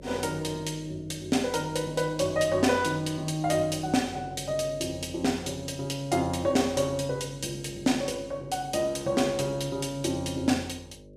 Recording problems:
hum; 50 Hz, harmonics up to 600 Hz, SNR 19 dB

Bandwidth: 14.5 kHz